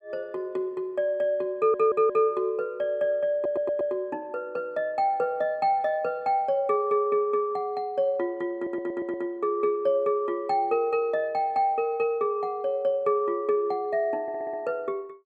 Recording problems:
audio stuttering; 4 times, first at 1.5 s

